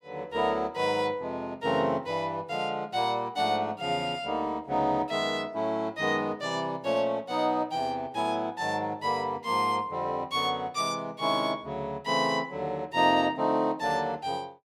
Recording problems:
none

